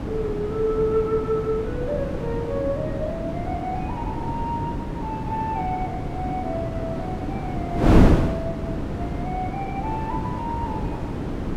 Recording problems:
wind on the microphone; below 340 Hz, SNR -2 dB

